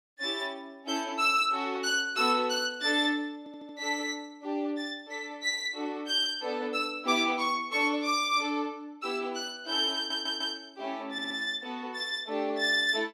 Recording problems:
stutter; at 3.5 s, at 10 s and at 11 s

